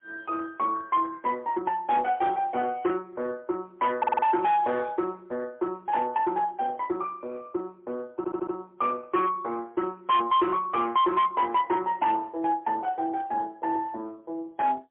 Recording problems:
telephone audio; 260 Hz to 3.4 kHz, AMR-NB, then MP3
distorted audio; hard clipping, signal-to-distortion ratio 12 dB
audio stuttering; at 4 s and at 8 s

